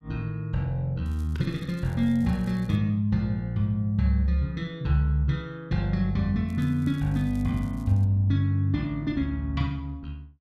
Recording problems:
crackling; from 1 to 3 s and from 6.5 to 8 s; loose cable, SNR 30 dB

